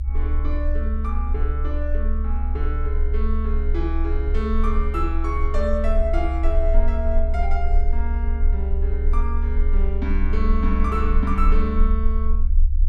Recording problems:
rumble; below 66 Hz, strongest tone 26 Hz, SNR -5 dB

